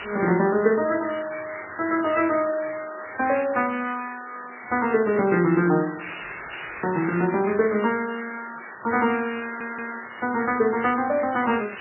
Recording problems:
lossy codec; MP3, log-spectral distance 21 dB, nothing above 2.6 kHz
hiss; SNR 12 dB
audio stuttering; at 9.5 s

